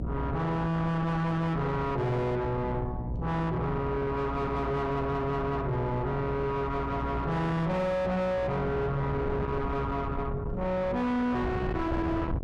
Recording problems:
distorted audio; soft clipping, signal-to-distortion ratio 6 dB
hum; 60 Hz, harmonics up to 720 Hz, SNR 8 dB
wind noise; below 410 Hz, SNR 7 dB

